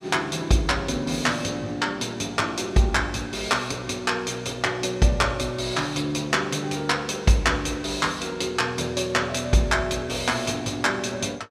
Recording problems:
none

